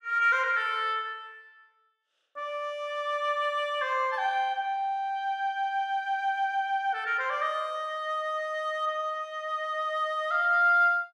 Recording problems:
none

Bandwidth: 12.5 kHz